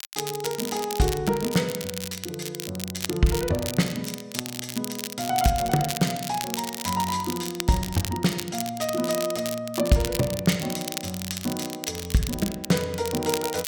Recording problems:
crackling; vinyl, SNR 6 dB

